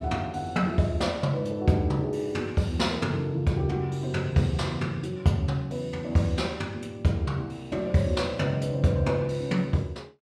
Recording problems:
none

